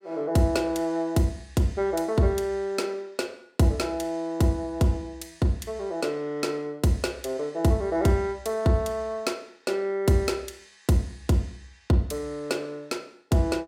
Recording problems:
none

